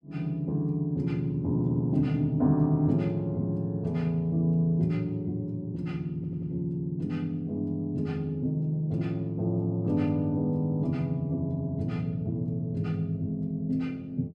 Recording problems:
stutter; at 6 s

